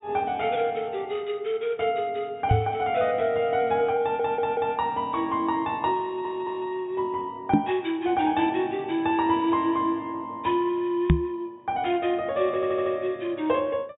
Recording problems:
treble missing; nothing above 4 kHz
microphone bump; at 2.5 s, at 7.5 s and at 11 s; peak +10 dB vs average level
stutter; at 4 s, at 6 s and at 13 s

